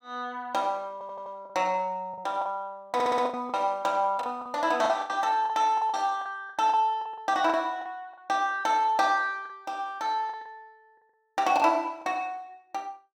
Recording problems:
lost packets; 10% of the sound replaced, filled with the last packet
stutter; at 1 s and at 3 s

